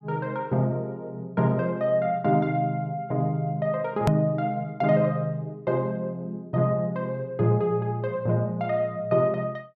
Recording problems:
click at an edit; at 4 s

